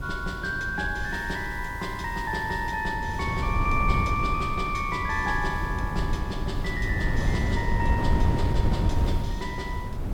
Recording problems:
hiss; SNR 24 dB
wind on the microphone; below 140 Hz, SNR 0 dB

